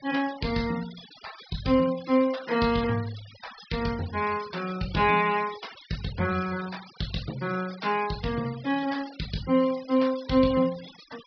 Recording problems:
low-pass filter; nothing above 5.5 kHz
denoising artefacts; signal-to-artefact ratio 17 dB

